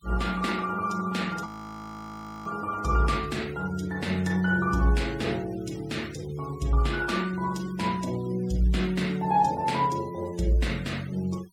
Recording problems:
denoising artefacts; signal-to-artefact ratio 21 dB
frozen audio; at 1.5 s for 1 s

